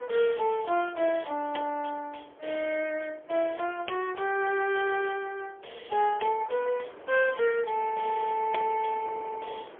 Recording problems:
phone line; 320 Hz to 3 kHz, AMR-NB, then MP3
wind on the microphone; below 1 kHz, SNR 21 dB

